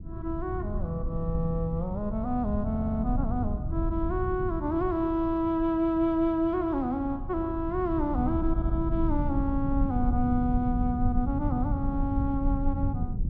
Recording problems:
rumble; below 110 Hz, SNR 4 dB
stutter; at 2.5 s and at 8.5 s

